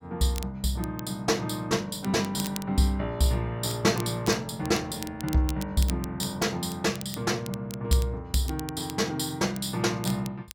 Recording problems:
crackling; vinyl, SNR 14 dB

